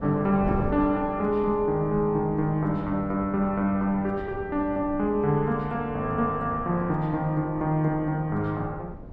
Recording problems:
wind noise; below 330 Hz, SNR 14 dB

